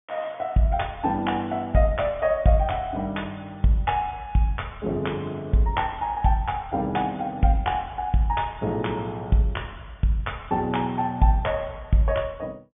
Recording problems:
low-pass filter; nothing above 3.6 kHz

